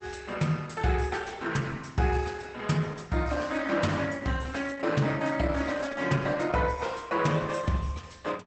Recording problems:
lossy codec; Opus, log-spectral distance 5 dB, nothing above 8 kHz

